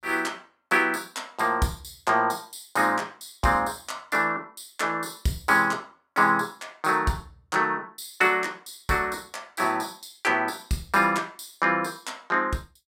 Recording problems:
none

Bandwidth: 16 kHz